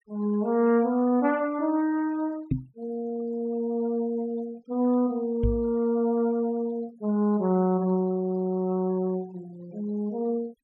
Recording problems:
denoising artefacts; signal-to-artefact ratio 26 dB
microphone bump; at 2.5 s and at 5.5 s; peak +4 dB vs average level

